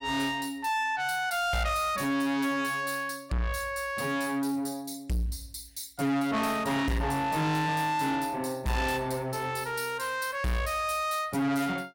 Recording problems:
distorted audio; soft clipping, signal-to-distortion ratio 7 dB

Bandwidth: 16.5 kHz